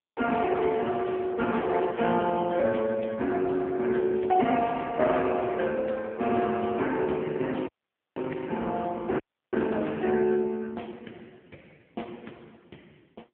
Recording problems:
telephone audio; 220 Hz to 3.3 kHz, AMR-NB
crackle; from 0.5 to 2.5 s, at 4 s and at 9.5 s; loose cable, SNR 29 dB
audio cutting out; at 7.5 s and at 9 s

